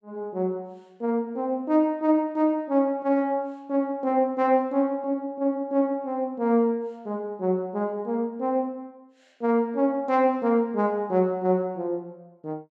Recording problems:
none

